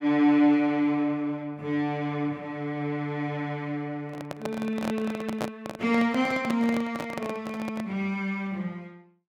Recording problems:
handling noise; from 4 to 8 s; peak 0 dB vs average level

